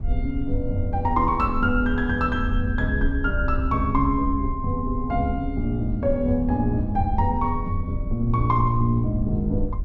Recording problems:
rumble; below 62 Hz, SNR 7 dB

